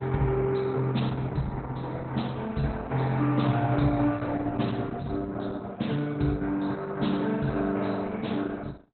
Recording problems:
lossy codec; Opus, log-spectral distance 4 dB, nothing above 4.1 kHz

